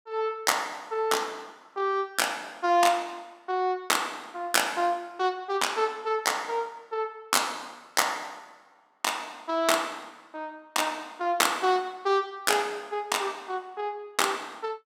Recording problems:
none

